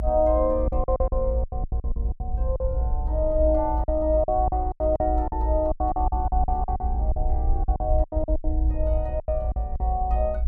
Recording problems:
rumble; below 60 Hz, SNR 1 dB
lost packets; 15% of the sound replaced, filled with silence

